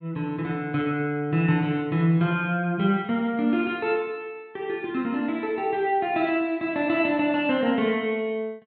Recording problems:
none

